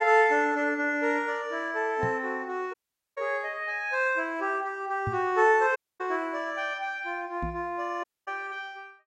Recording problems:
microphone thump; at 2 s, at 5 s and at 7.5 s; peak -1 dB vs average level
dropout; at 2.5 s, at 6 s and at 8 s

